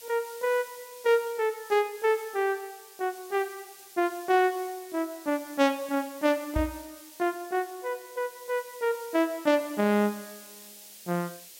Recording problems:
hiss; SNR 18 dB
microphone bump; at 6.5 s; peak +1 dB vs average level

